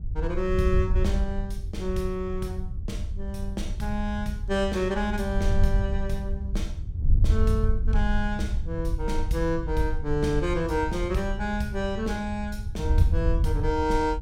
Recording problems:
wind on the microphone; below 78 Hz, SNR 0 dB

